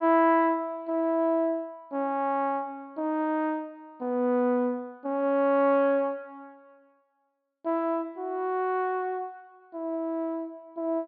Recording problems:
low-pass filter; nothing above 4.9 kHz

